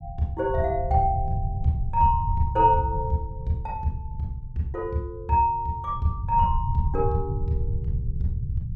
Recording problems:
low-frequency rumble; below 110 Hz, SNR 6 dB

